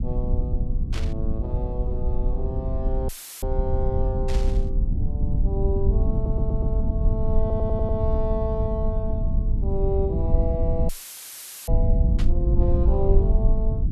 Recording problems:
rumble; below 80 Hz, SNR -6 dB
static burst; at 1 s, at 4.5 s and at 12 s; peak -2 dB vs average level
dropout; at 3 s and at 11 s for 1 s; filled with static
audio stuttering; at 6 s and at 7.5 s

